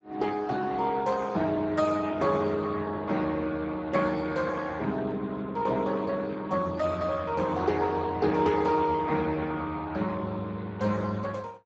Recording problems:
lossy codec; Speex, log-spectral distance 4 dB, nothing above 7.6 kHz

